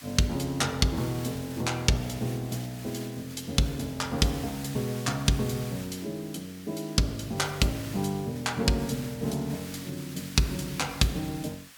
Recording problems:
hiss; SNR 14 dB

